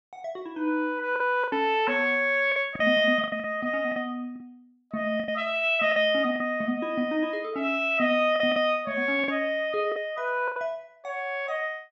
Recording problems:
packet loss; 7% of the sound replaced, filled with the last packet

